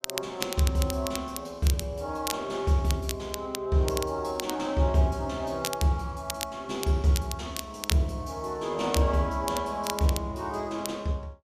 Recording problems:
crackling; vinyl, SNR 8 dB

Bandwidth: 14.5 kHz